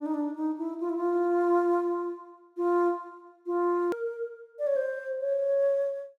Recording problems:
click at an edit; at 4 s

